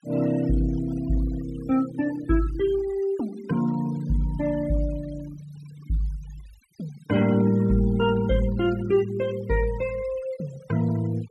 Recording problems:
noise reduction artefacts; signal-to-artefact ratio 20 dB

